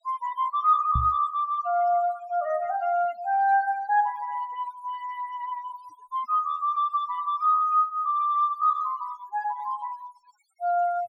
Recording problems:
noise reduction artefacts; signal-to-artefact ratio 22 dB
knock on the microphone; at 1 s; peak +2 dB vs average level

